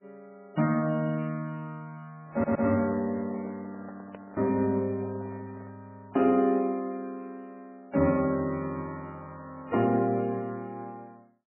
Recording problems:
codec artefacts; MP3, log-spectral distance 2 dB, nothing above 2.5 kHz
audio stuttering; at 2.5 s
microphone handling noise; from 3 to 6 s; peak -12 dB vs average level

